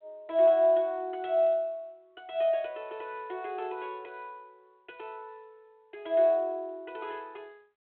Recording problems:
telephone audio; 280 Hz to 4 kHz, G.726

